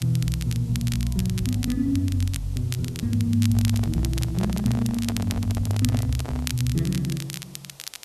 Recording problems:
hiss; SNR 25 dB
crackle; vinyl, SNR 12 dB
microphone handling noise; from 3.5 to 6.5 s; peak -4 dB vs average level

